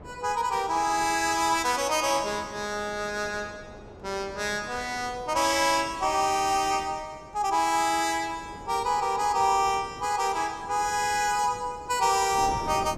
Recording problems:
wind noise; below 610 Hz, SNR 19 dB

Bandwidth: 15 kHz